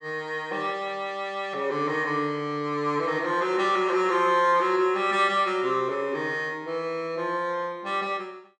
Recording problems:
none

